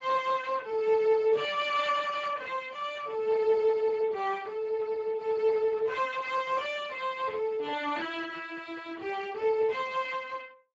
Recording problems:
codec artefacts; Speex, log-spectral distance 4 dB

